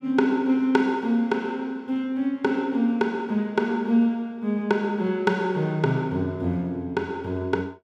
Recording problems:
none

